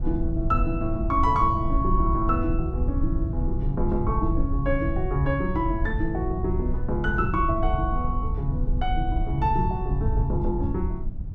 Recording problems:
rumble; below 86 Hz, SNR 1 dB

